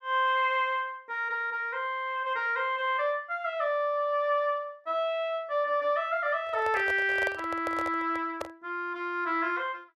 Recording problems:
handling noise; from 6.5 to 8.5 s; peak -1 dB vs average level

